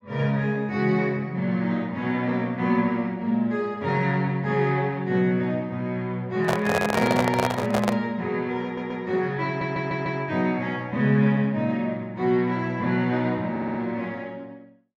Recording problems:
handling noise; from 6.5 to 8 s; peak +4 dB vs average level
stutter; at 8.5 s, at 9.5 s and at 14 s

